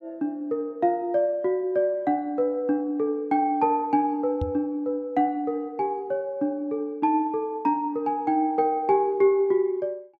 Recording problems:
microphone thump; at 4.5 s; peak -1 dB vs average level

